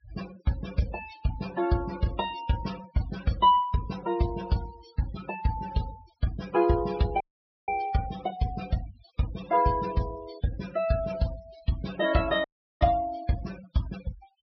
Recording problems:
treble cut off; nothing above 5.5 kHz
denoising artefacts; signal-to-artefact ratio 15 dB
audio cutting out; at 7 s and at 12 s

